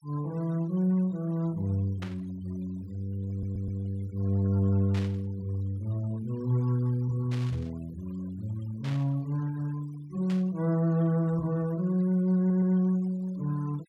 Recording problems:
denoising artefacts; signal-to-artefact ratio 25 dB
burst of static; 5 times, first at 2 s; peak -9 dB vs average level
audio stuttering; at 3.5 s and at 12 s

